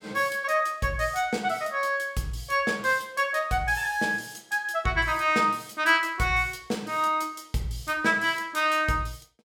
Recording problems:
none

